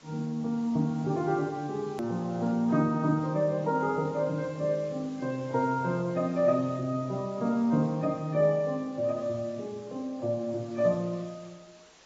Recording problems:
codec artefacts; AAC, then AAC, log-spectral distance 4 dB
background hiss; slope -2 dB per octave, SNR 25 dB
hard cut with a click; at 2 s

